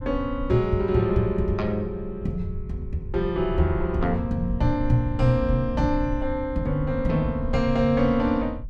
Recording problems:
low-frequency rumble; below 88 Hz, SNR 9 dB

